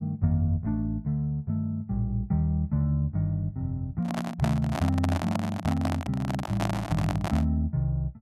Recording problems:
microphone handling noise; from 4 to 7.5 s; peak +2 dB vs average level

